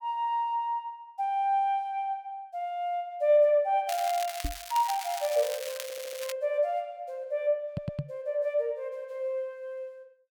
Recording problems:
crackle; from 4 to 6.5 s; loose cable, SNR 10 dB
microphone thump; at 4.5 s and at 8 s; peak +1 dB vs average level
audio stuttering; at 6 s and at 7.5 s

